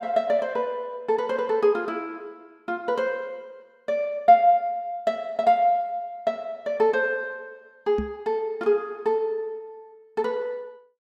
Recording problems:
knock on the microphone; at 8 s; peak -1 dB vs average level

